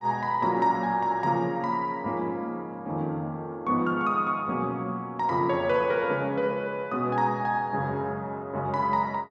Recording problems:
none

